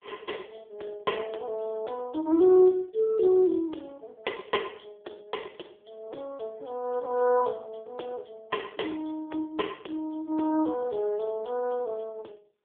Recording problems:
phone line; 280 Hz to 3.3 kHz, AMR-NB

